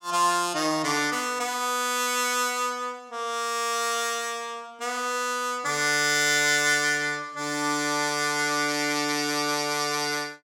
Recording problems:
none

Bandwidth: 16 kHz